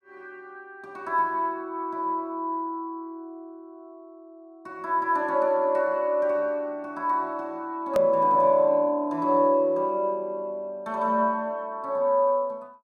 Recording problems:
hard cut with a click; at 8 s

